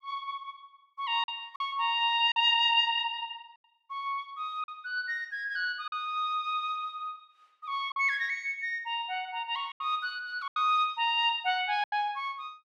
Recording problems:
packet loss; 4% of the sound replaced, filled with silence

